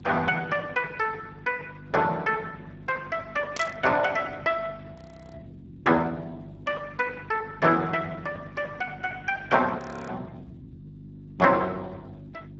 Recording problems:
low-pass filter; nothing above 7.8 kHz
lossy codec; Speex, log-spectral distance 3 dB
hum; 50 Hz, harmonics up to 450 Hz, SNR 18 dB
static burst; at 3.5 s; peak -3 dB vs average level
frozen audio; at 5 s and at 10 s

